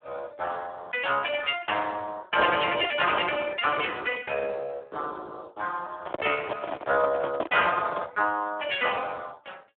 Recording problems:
telephone audio; 220 Hz to 3.5 kHz, Speex
handling noise; from 6 to 8 s; peak +2 dB vs average level

